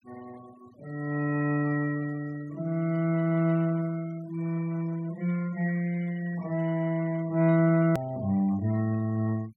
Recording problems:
noise reduction artefacts; signal-to-artefact ratio 23 dB
edit click; at 8 s

